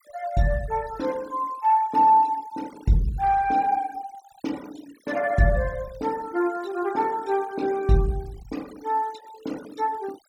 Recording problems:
denoising artefacts; signal-to-artefact ratio 22 dB

